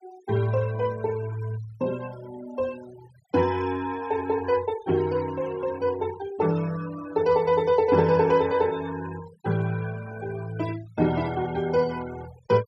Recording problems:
denoising artefacts; signal-to-artefact ratio 18 dB

